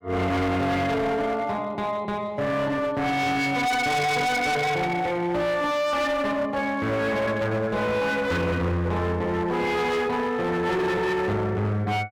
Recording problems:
distorted audio; hard clipping, signal-to-distortion ratio 8 dB

